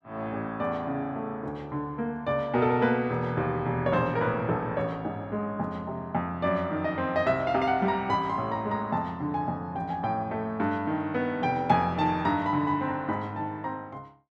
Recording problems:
none

